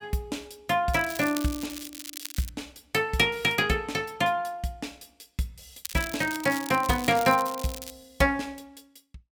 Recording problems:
crackle; from 1 to 2.5 s and from 6 to 8 s; loose cable, SNR 12 dB

